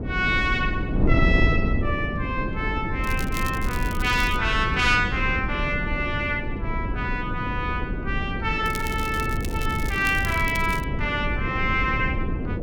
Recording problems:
wind noise; below 220 Hz, SNR 3 dB
crackle; from 3 to 4.5 s and from 8.5 to 11 s; loose cable, SNR 14 dB

